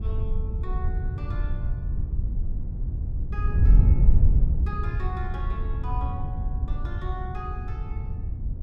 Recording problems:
wind noise; below 78 Hz, SNR -13 dB

